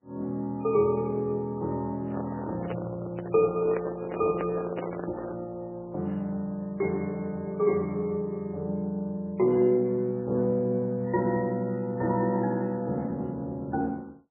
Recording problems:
lossy codec; MP3, log-spectral distance 2 dB, nothing above 2.4 kHz
microphone handling noise; from 2 to 5.5 s; peak 0 dB vs average level

